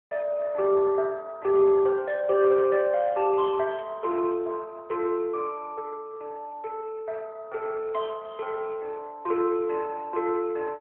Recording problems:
phone line; 320 Hz to 3.4 kHz, AMR-NB

